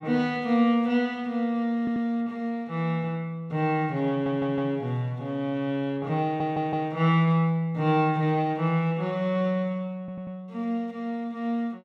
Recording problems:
stutter; 4 times, first at 2 s

